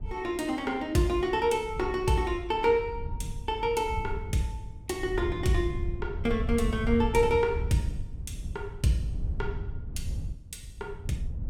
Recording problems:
wind on the microphone; below 96 Hz, SNR 8 dB

